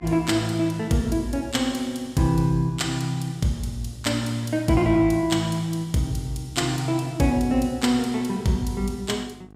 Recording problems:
hum; 50 Hz, harmonics up to 1.6 kHz, SNR 25 dB

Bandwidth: 15.5 kHz